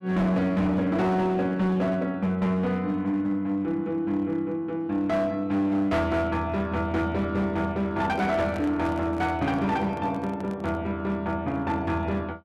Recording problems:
distortion; hard clipping, uneven, signal-to-distortion ratio 10 dB
microphone handling noise; from 8 to 11 s; peak -8 dB vs average level

